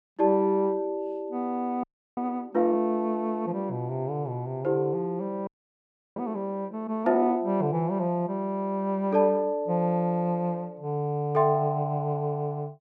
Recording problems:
audio freezing; at 2 s and at 5.5 s for 0.5 s

